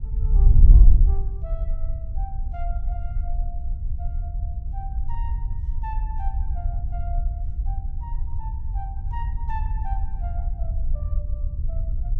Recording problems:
wind noise; below 60 Hz, SNR -17 dB

